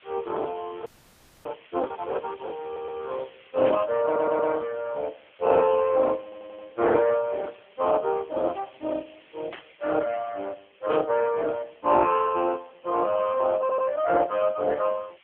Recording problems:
phone line; 260 Hz to 3.1 kHz, AMR-NB
background hiss; SNR 29 dB
audio freezing; at 1 s for 0.5 s
audio stuttering; 4 times, first at 2.5 s
static burst; at 3.5 s, at 9.5 s and at 11 s; peak -9 dB vs average level

